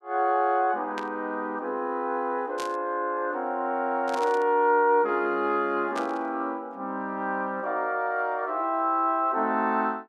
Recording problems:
burst of static; 4 times, first at 1 s; peak -7 dB vs average level

